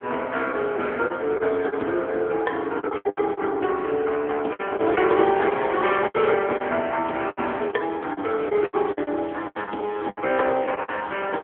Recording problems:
telephone audio; 240 Hz to 3.7 kHz, AMR-NB
packet loss; 11% of the sound replaced, filled with the last packet
crackle; from 5 to 6.5 s and from 7.5 to 10 s; loose cable, SNR 27 dB

